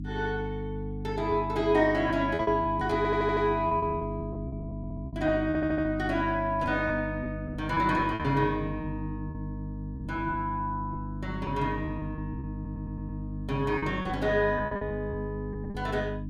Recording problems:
hum; 50 Hz, harmonics up to 300 Hz, SNR 7 dB
lost packets; 8% of the sound replaced, filled with repeated pitch periods
audio stuttering; 4 times, first at 3 s

